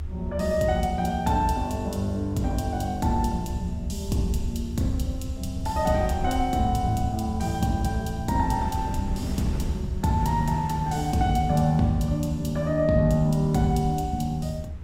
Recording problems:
low-frequency rumble; below 80 Hz, SNR 9 dB
wind on the microphone; below 260 Hz, SNR 17 dB

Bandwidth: 16.5 kHz